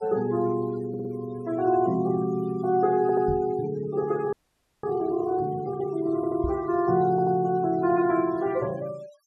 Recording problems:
denoising artefacts; signal-to-artefact ratio 22 dB
audio stuttering; 4 times, first at 1 s
knock on the microphone; at 3.5 s and at 6.5 s; peak -2 dB vs average level
frozen audio; at 4.5 s for 0.5 s

